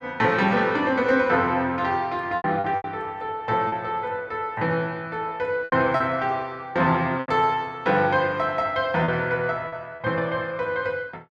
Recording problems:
packet loss; 5% of the sound replaced, filled with repeated pitch periods

